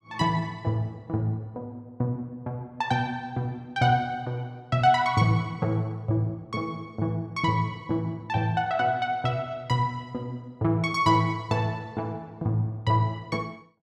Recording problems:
none

